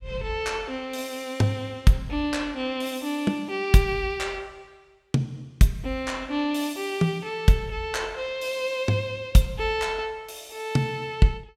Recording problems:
none

